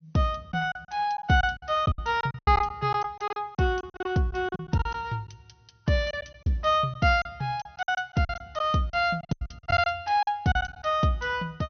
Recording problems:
treble missing; nothing above 6.3 kHz
packet loss; 13% of the sound replaced, filled with silence

